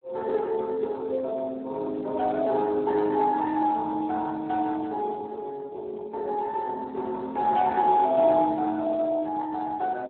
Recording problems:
phone line; 280 Hz to 2.2 kHz, Speex

